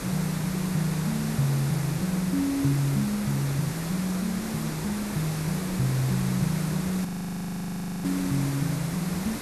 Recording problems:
background hiss; slope -4 dB per octave, SNR 7 dB
frozen audio; at 7 s for 1 s

